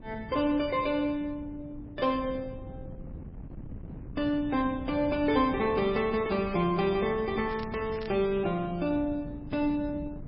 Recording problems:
lossy compression; MP3, log-spectral distance 2 dB, nothing above 4.9 kHz
wind noise; below 210 Hz, SNR 14 dB
crackle; at 7.5 s; loose cable, SNR 20 dB

